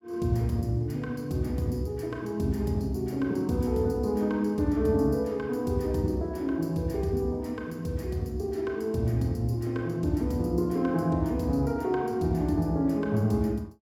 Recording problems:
none

